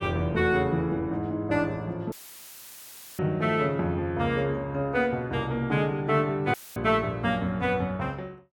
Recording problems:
audio cutting out; at 2 s for 1 s and at 6.5 s; filled with static

